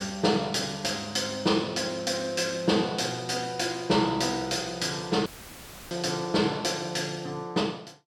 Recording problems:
dropout; at 5.5 s for 0.5 s; filled with static

